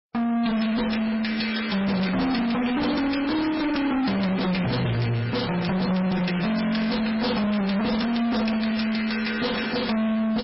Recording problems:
lossy compression; MP3, log-spectral distance 5 dB, nothing above 5.5 kHz
distorted audio; soft clipping, signal-to-distortion ratio 6 dB

